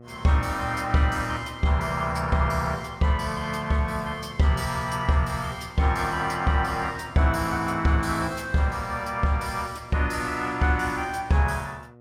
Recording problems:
hum; 60 Hz, harmonics up to 1.3 kHz, SNR 24 dB

